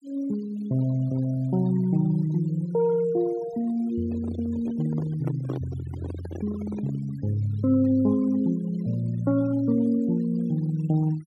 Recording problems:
denoising artefacts; signal-to-artefact ratio 22 dB
handling noise; from 4 to 7 s; peak -3 dB vs average level

